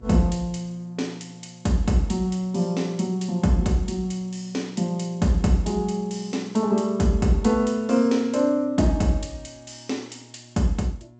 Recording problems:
codec artefacts; G.722, log-spectral distance 3 dB, nothing above 7.8 kHz
electrical hum; 60 Hz, harmonics up to 1.1 kHz, SNR 26 dB

